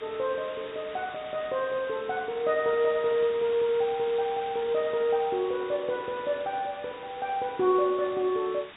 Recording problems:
treble missing; nothing above 4 kHz
hiss; SNR 16 dB

